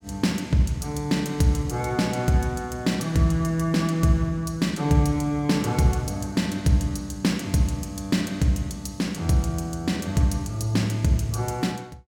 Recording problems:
none

